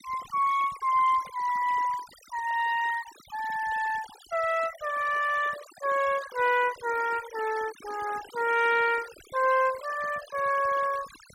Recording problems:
noise reduction artefacts; signal-to-artefact ratio 17 dB

